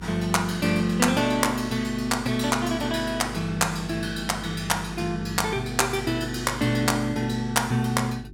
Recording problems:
hum; 50 Hz, harmonics up to 400 Hz, SNR 16 dB

